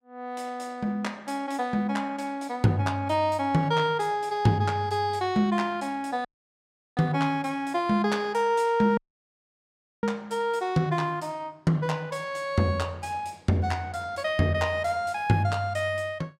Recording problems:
audio cutting out; at 6.5 s for 0.5 s and at 9 s for 1 s

